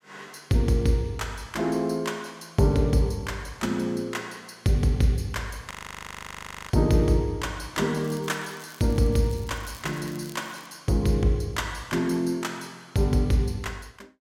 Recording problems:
frozen audio; at 5.5 s for 1 s
crackling; from 8 to 11 s; loose cable, SNR 22 dB

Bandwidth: 16.5 kHz